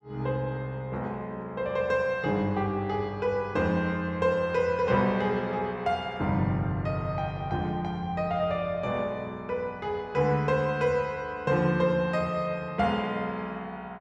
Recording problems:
none

